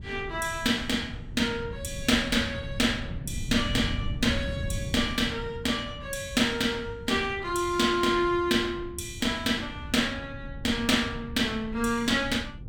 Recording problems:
wind noise; below 140 Hz, SNR 11 dB

